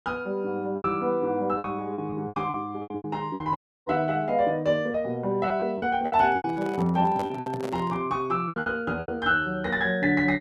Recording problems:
packet loss; 12% of the sound replaced, filled with repeated pitch periods
audio cutting out; at 3.5 s
handling noise; from 6 to 8 s; peak -4 dB vs average level

